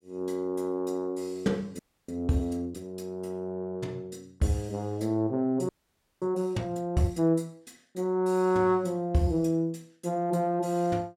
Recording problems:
audio freezing; at 2 s and at 5.5 s for 0.5 s

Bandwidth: 16 kHz